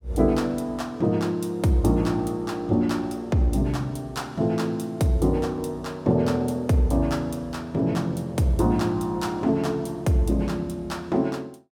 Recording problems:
none

